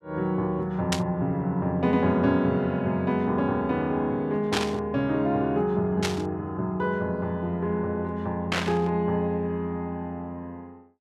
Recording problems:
static burst; 4 times, first at 1 s; peak +3 dB vs average level

